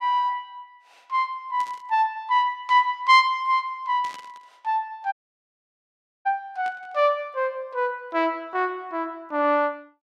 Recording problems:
static burst; at 1.5 s, at 4 s and at 6.5 s; peak -14 dB vs average level
audio cutting out; at 5 s for 1 s

